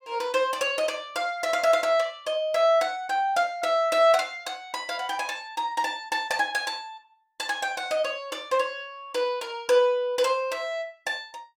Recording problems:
none

